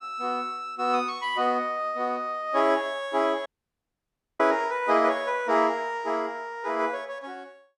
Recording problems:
audio cutting out; at 3.5 s for 1 s

